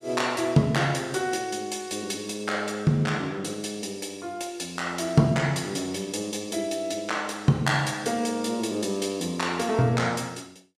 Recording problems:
none

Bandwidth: 15 kHz